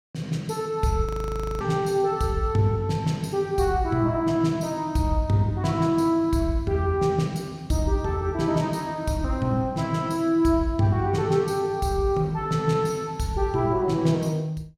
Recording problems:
audio freezing; at 1 s for 0.5 s

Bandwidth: 16 kHz